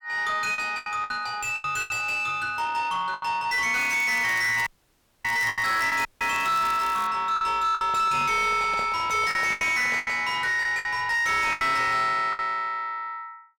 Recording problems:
distorted audio; soft clipping, signal-to-distortion ratio 6 dB
packet loss; 8% of the sound replaced, filled with the last packet
crackle; from 4 to 7 s; loose cable, SNR 19 dB
audio cutting out; at 4.5 s for 0.5 s and at 6 s
microphone handling noise; from 8 to 10 s; peak -8 dB vs average level

